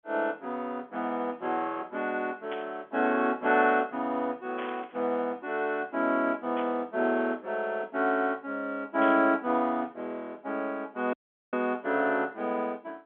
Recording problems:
telephone audio; 220 Hz to 3.5 kHz, G.711
burst of static; 4 times, first at 2.5 s; peak -8 dB vs average level
audio cutting out; at 11 s

